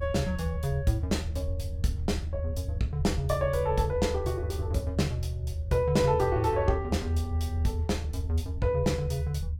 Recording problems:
low-frequency rumble; below 80 Hz, strongest tone 78 Hz, SNR 4 dB

